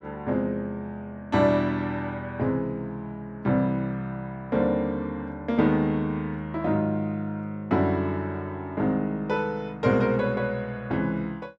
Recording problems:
none

